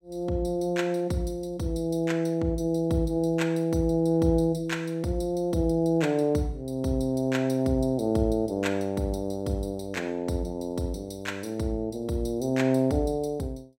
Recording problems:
none

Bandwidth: 16 kHz